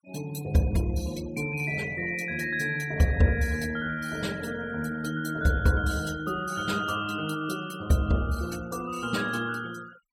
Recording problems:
denoising artefacts; signal-to-artefact ratio 19 dB

